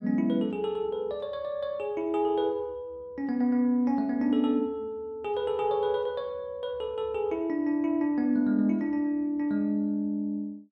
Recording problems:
none

